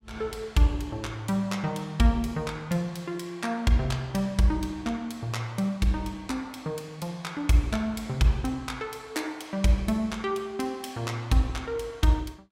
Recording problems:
none

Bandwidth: 16 kHz